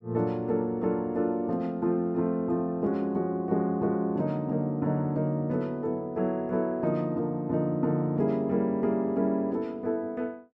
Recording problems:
none

